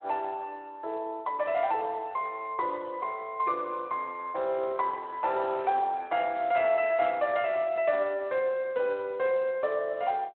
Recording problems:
telephone audio; 340 Hz to 3.6 kHz, Speex
handling noise; from 4.5 to 6 s; peak -10 dB vs average level

